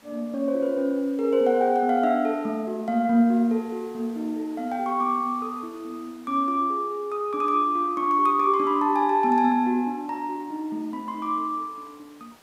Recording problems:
background hiss; slope -3 dB per octave, SNR 29 dB

